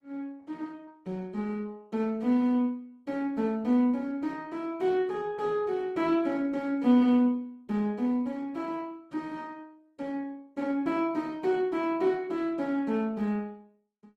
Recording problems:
codec artefacts; Opus, log-spectral distance 2 dB, nothing above 18.9 kHz

